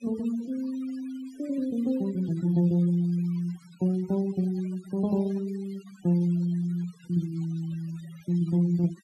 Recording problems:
noise reduction artefacts; signal-to-artefact ratio 23 dB

